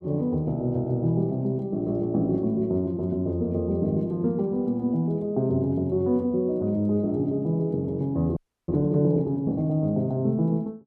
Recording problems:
audio freezing; at 8.5 s

